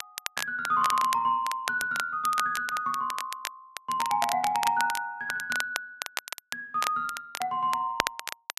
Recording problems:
crackle; vinyl, SNR 7 dB

